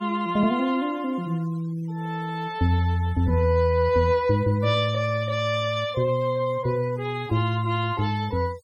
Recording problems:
noise reduction artefacts; signal-to-artefact ratio 24 dB

